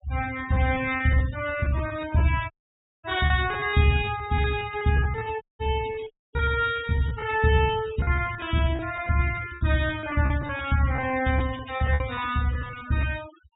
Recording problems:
low-pass filter; nothing above 4 kHz
denoising artefacts; signal-to-artefact ratio 15 dB
packet loss; 12% of the sound replaced, filled with repeated pitch periods
dropout; at 2.5 s for 0.5 s, at 5.5 s and at 6 s

